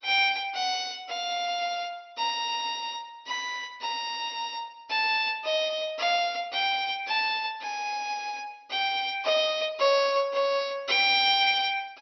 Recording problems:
codec artefacts; MP2, log-spectral distance 4 dB, nothing above 5.7 kHz

